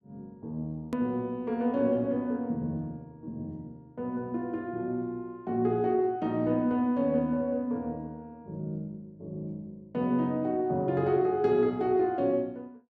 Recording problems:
edit click; at 1 s

